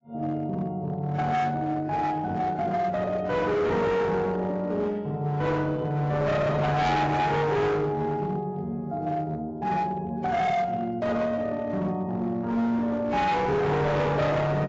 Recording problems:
lossy compression; AAC, log-spectral distance 2 dB, nothing above 7.3 kHz
distortion; hard clipping, signal-to-distortion ratio 8 dB

